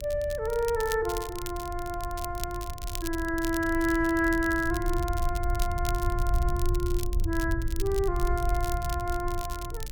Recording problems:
mains hum; 60 Hz, harmonics up to 600 Hz, SNR 25 dB
low-frequency rumble; below 70 Hz, SNR 4 dB
crackling; vinyl, SNR 12 dB

